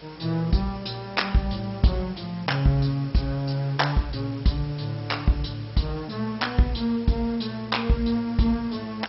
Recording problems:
codec artefacts; MP2, log-spectral distance 10 dB, nothing above 5.5 kHz
hum; 60 Hz, harmonics up to 600 Hz, SNR 28 dB
hiss; slope 0 dB per octave, SNR 22 dB

